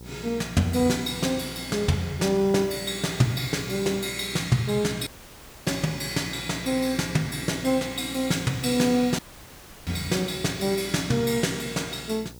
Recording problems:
hum; 60 Hz, harmonics up to 960 Hz, SNR 19 dB
background hiss; SNR 23 dB
audio cutting out; at 5 s for 0.5 s and at 9 s for 0.5 s

